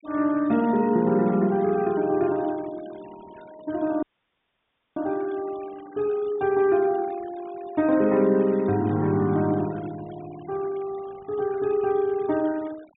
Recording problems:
treble missing; nothing above 3.7 kHz
denoising artefacts; signal-to-artefact ratio 24 dB
dropout; at 4 s for 1 s

